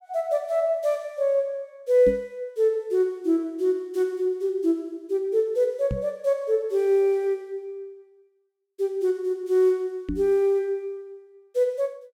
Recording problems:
microphone thump; at 2 s, at 6 s and at 10 s; peak -1 dB vs average level

